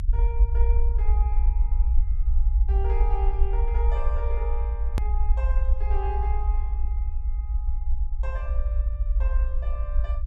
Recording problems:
rumble; below 56 Hz, SNR -12 dB
hard cut with a click; at 5 s

